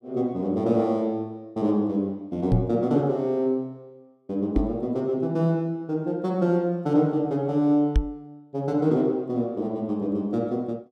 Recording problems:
microphone bump; at 2.5 s, at 4.5 s and at 8 s; peak +6 dB vs average level

